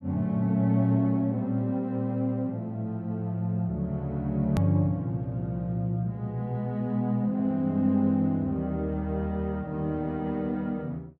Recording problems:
click at an edit; at 4.5 s

